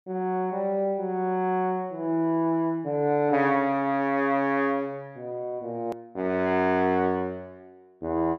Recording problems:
edit click; at 6 s

